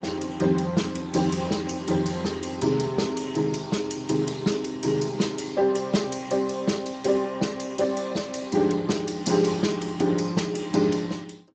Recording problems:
lossy codec; Speex, log-spectral distance 6 dB, nothing above 7.6 kHz

